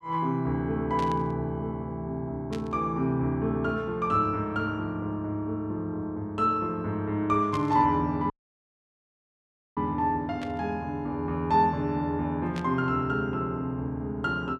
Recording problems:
burst of static; 5 times, first at 1 s; peak -8 dB vs average level
audio cutting out; at 8.5 s for 1.5 s

